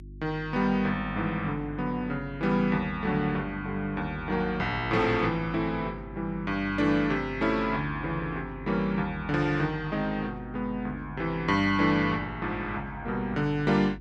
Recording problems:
hum; 50 Hz, harmonics up to 350 Hz, SNR 16 dB

